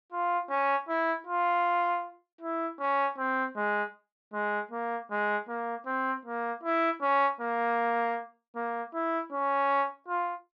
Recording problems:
none

